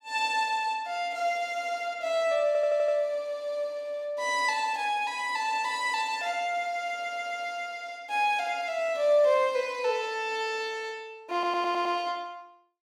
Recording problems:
audio stuttering; at 2.5 s, at 7 s and at 11 s

